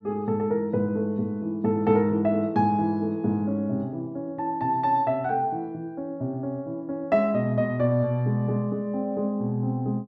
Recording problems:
none

